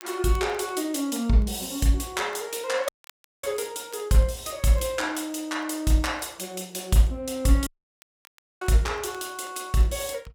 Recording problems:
crackle; vinyl, SNR 30 dB
dropout; at 3 s for 0.5 s and at 7.5 s for 1 s

